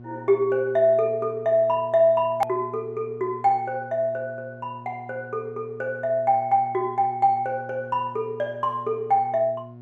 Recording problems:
mains hum; 60 Hz, harmonics up to 720 Hz, SNR 19 dB
click at an edit; at 2.5 s

